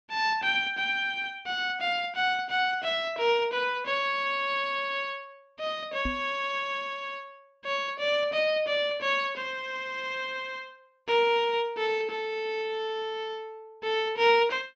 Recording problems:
treble cut off; nothing above 7.8 kHz
microphone bump; at 6 s; peak -2 dB vs average level

